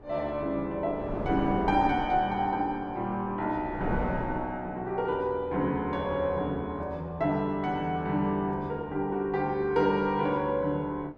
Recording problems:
wind noise; below 550 Hz, SNR 9 dB

